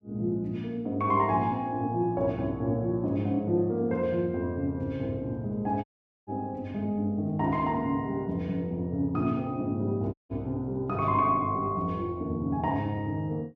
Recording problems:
audio cutting out; at 6 s and at 10 s

